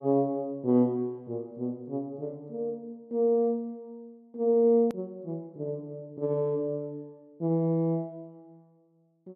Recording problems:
edit click; at 5 s

